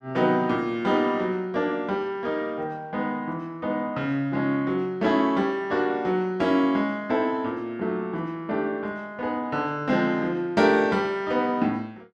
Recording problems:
none

